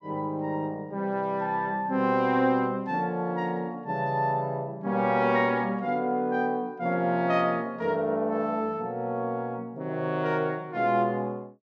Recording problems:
none

